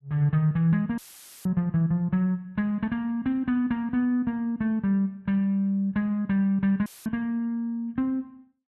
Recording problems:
dropout; at 1 s and at 7 s; filled with static

